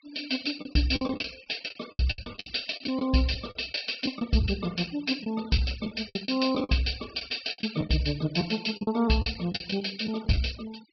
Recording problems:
treble cut off; nothing above 5.5 kHz
denoising artefacts; signal-to-artefact ratio 17 dB
lost packets; 13% of the sound replaced, filled with the last packet

